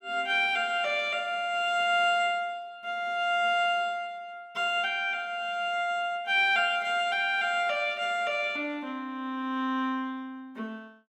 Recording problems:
none

